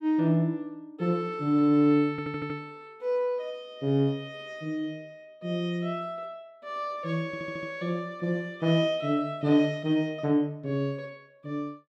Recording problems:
audio stuttering; at 2 s and at 7.5 s

